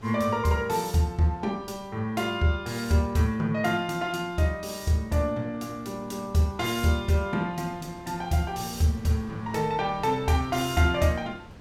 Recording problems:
wind on the microphone; below 550 Hz, SNR 22 dB

